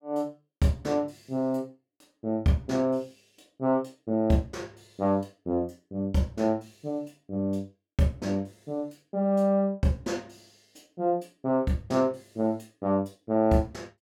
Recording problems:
none

